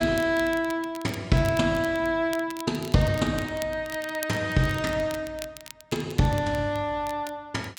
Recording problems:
crackle; vinyl, SNR 17 dB

